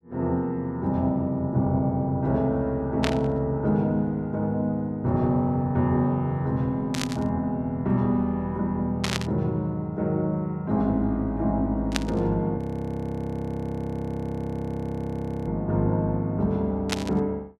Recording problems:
burst of static; 5 times, first at 3 s; peak +4 dB vs average level
audio freezing; at 13 s for 3 s

